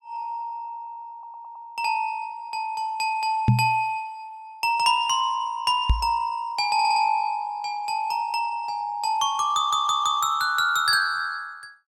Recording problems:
audio stuttering; at 1 s, at 6.5 s and at 9.5 s
microphone bump; at 3.5 s and at 6 s; peak +9 dB vs average level

